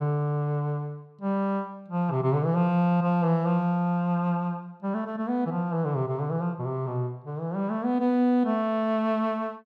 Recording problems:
none

